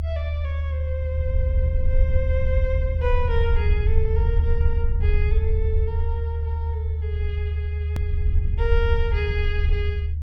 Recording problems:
rumble; below 78 Hz, SNR -8 dB
edit click; at 8 s

